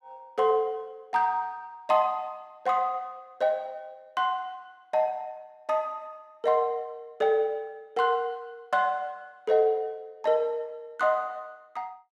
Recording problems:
none

